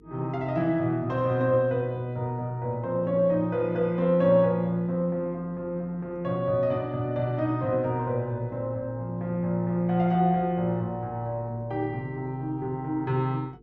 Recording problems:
hum; 50 Hz, harmonics up to 450 Hz, SNR 26 dB

